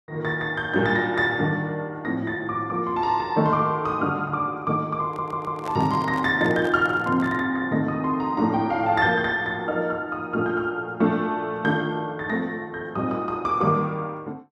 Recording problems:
audio stuttering; at 5 s
handling noise; from 5 to 7.5 s; peak -7 dB vs average level

